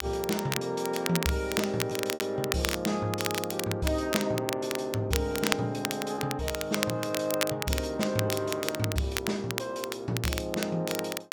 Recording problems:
crackling; vinyl, SNR 4 dB
packet loss; 1.5% of the sound replaced, filled with repeated pitch periods

